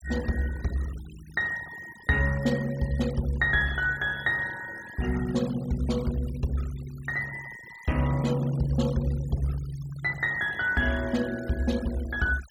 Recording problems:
denoising artefacts; signal-to-artefact ratio 19 dB

